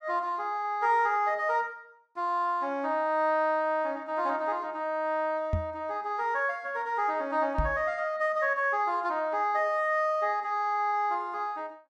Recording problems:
microphone thump; at 5.5 s and at 7.5 s; peak +3 dB vs average level

